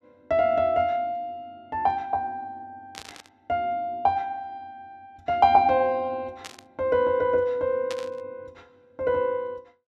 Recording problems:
static burst; at 3 s, at 6.5 s and at 8 s; peak -7 dB vs average level

